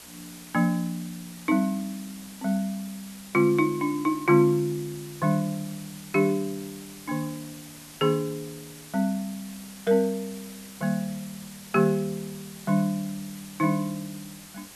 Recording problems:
hiss; slope -1 dB per octave, SNR 17 dB

